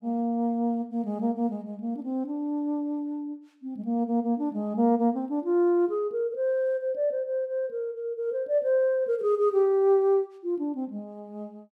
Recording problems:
none

